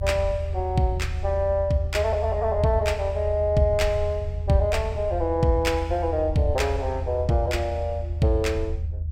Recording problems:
low-frequency rumble; below 80 Hz, strongest tone 78 Hz, SNR 6 dB

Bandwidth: 16 kHz